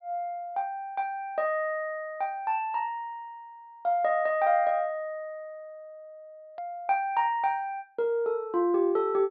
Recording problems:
treble missing; nothing above 5 kHz
click at an edit; at 6.5 s

